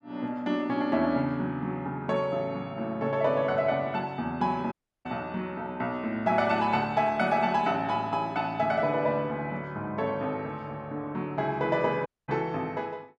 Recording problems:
audio cutting out; at 4.5 s and at 12 s

